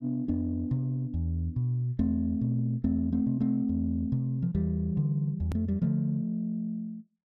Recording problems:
click at an edit; at 5.5 s

